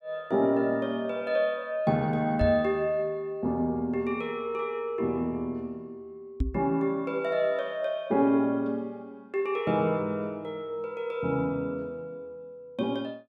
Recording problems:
knock on the microphone; at 2.5 s and at 6.5 s; peak +4 dB vs average level

